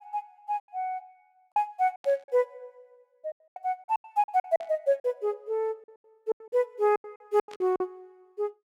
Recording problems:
lost packets; 16% of the sound replaced, filled with silence
static burst; at 2 s, at 4.5 s and at 7.5 s; peak -14 dB vs average level

